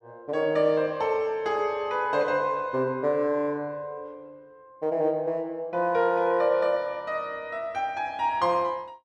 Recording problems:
none

